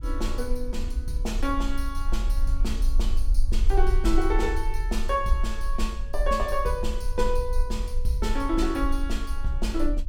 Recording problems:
rumble; below 44 Hz, strongest tone 20 Hz, SNR 0 dB

